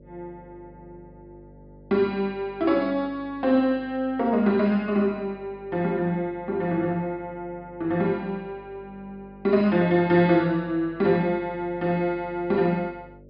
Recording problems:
treble missing; nothing above 5.5 kHz
electrical hum; 50 Hz, harmonics up to 600 Hz, SNR 25 dB

